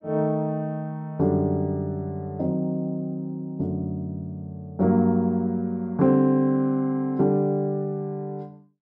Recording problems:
none

